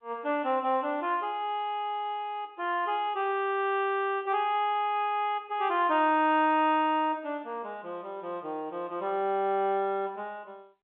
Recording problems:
telephone audio; 240 Hz to 3.7 kHz, G.711

